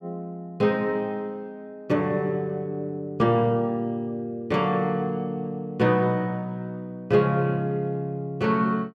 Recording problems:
none

